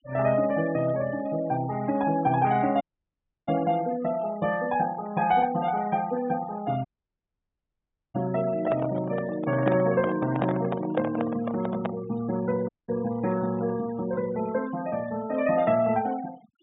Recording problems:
treble missing; nothing above 4 kHz
denoising artefacts; signal-to-artefact ratio 17 dB
dropout; at 3 s for 0.5 s, at 7 s for 1.5 s and at 13 s
microphone handling noise; from 8.5 to 12 s; peak +1 dB vs average level

